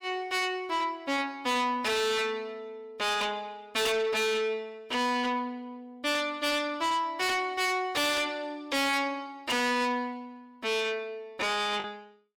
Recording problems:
distorted audio; soft clipping, signal-to-distortion ratio 6 dB
lost packets; 0.4% of the sound replaced, filled with the last packet

